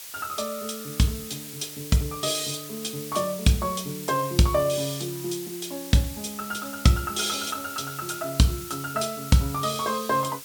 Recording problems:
hiss; slope +3 dB per octave, SNR 11 dB

